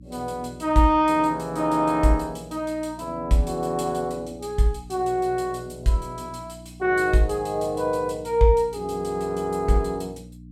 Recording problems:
hum; 60 Hz, harmonics up to 300 Hz, SNR 20 dB

